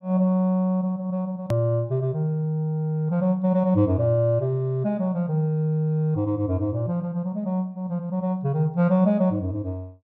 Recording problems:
edit click; at 1.5 s

